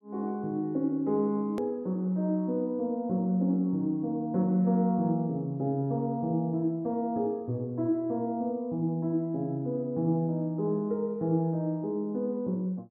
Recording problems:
click at an edit; at 1.5 s

